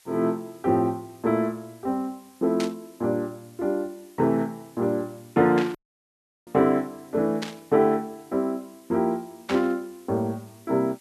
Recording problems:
background hiss; slope +2 dB per octave, SNR 28 dB
burst of static; 4 times, first at 2.5 s; peak -1 dB vs average level
dropout; at 6 s for 0.5 s

